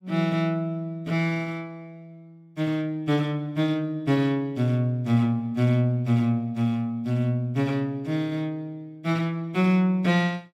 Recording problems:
none

